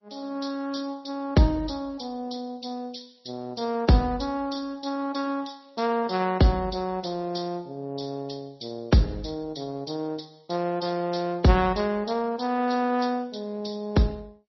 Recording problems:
lossy compression; MP2, then MP3, log-spectral distance 5 dB, nothing above 5.7 kHz

